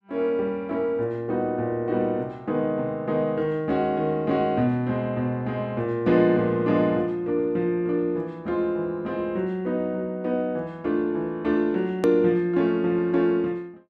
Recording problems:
edit click; at 12 s

